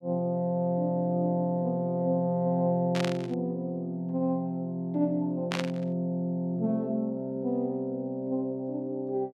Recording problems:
burst of static; at 3 s and at 5.5 s; peak +1 dB vs average level

